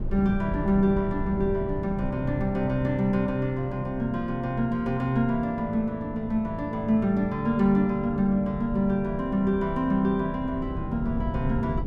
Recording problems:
wind on the microphone; below 180 Hz, SNR 10 dB

